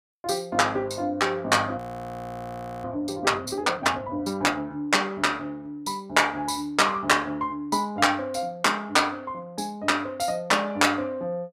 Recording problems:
audio freezing; at 2 s for 1 s

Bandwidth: 15.5 kHz